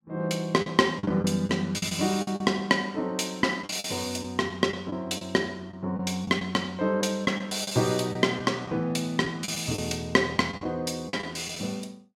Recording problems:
lost packets; 8% of the sound replaced, filled with the last packet

